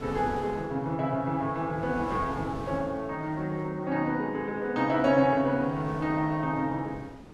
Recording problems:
wind noise; below 590 Hz, SNR 16 dB

